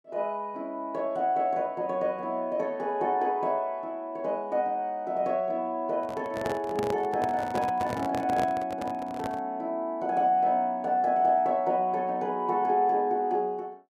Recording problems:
handling noise; from 6 to 9.5 s; peak -2 dB vs average level

